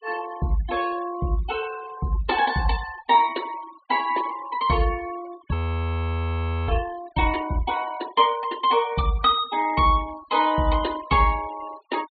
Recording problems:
treble missing; nothing above 4.3 kHz
noise reduction artefacts; signal-to-artefact ratio 18 dB
frozen audio; at 5.5 s for 1 s

